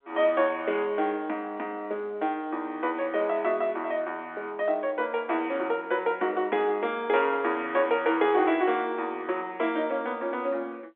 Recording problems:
phone line; 260 Hz to 3.8 kHz, G.711

